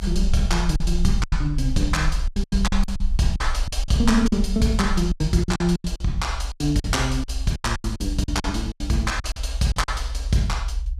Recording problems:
low-frequency rumble; below 60 Hz, SNR 5 dB
lost packets; 14% of the sound replaced, filled with silence

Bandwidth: 14.5 kHz